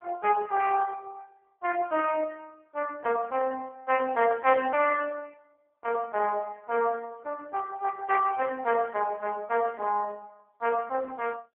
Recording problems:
phone line; 280 Hz to 3.1 kHz, AMR-NB

